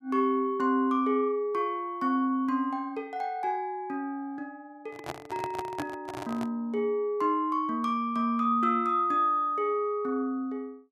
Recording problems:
handling noise; from 5 to 6.5 s; peak -3 dB vs average level

